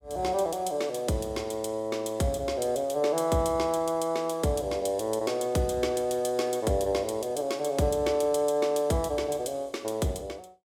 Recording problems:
none

